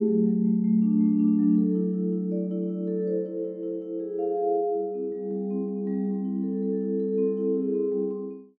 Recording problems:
none

